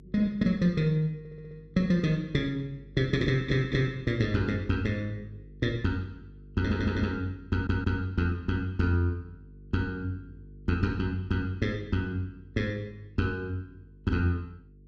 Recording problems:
electrical hum; 50 Hz, harmonics up to 450 Hz, SNR 21 dB
audio stuttering; 4 times, first at 1 s

